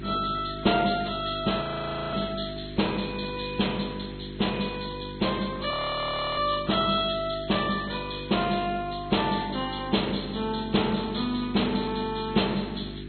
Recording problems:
codec artefacts; Vorbis, then MP2, log-spectral distance 10 dB, nothing above 4.2 kHz
hum; 50 Hz, harmonics up to 400 Hz, SNR 11 dB
hiss; SNR 26 dB
audio freezing; at 1.5 s for 0.5 s and at 5.5 s for 0.5 s

